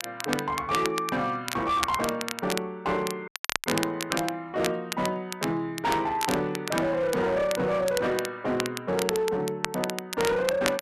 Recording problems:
distortion; hard clipping, signal-to-distortion ratio 10 dB
crackling; vinyl, SNR 7 dB
audio cutting out; at 3.5 s

